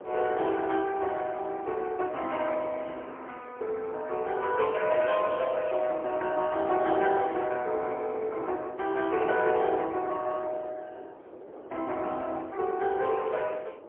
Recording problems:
phone line; 280 Hz to 3.6 kHz, AMR-NB, then MP3
wind noise; below 680 Hz, SNR 16 dB

